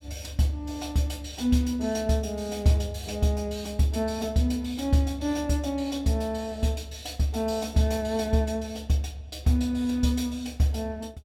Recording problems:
none

